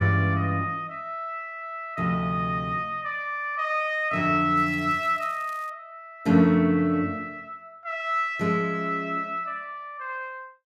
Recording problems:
crackling; from 4.5 to 5.5 s; loose cable, SNR 27 dB

